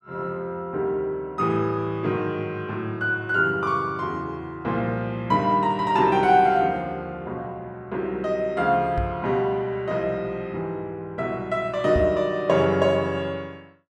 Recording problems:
knock on the microphone; at 9 s and at 12 s; peak +1 dB vs average level

